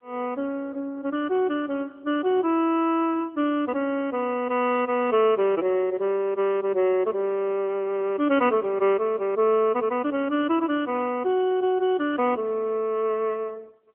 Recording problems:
telephone audio; 260 Hz to 3.3 kHz, AMR-NB

